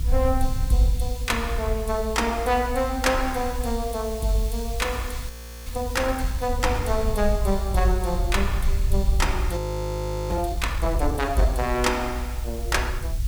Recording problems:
hiss; slope +2 dB per octave, SNR 16 dB
low-frequency rumble; below 64 Hz, SNR 3 dB
frozen audio; at 5.5 s and at 9.5 s for 0.5 s

